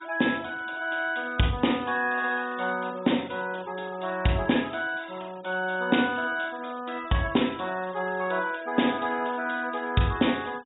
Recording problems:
treble missing; nothing above 4 kHz
noise reduction artefacts; signal-to-artefact ratio 23 dB

